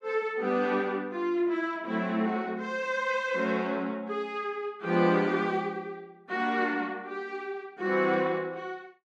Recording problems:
none

